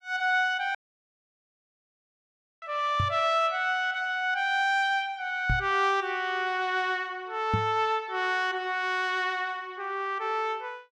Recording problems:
dropout; at 1 s for 2 s
knock on the microphone; at 3 s, at 5.5 s and at 7.5 s; peak +2 dB vs average level

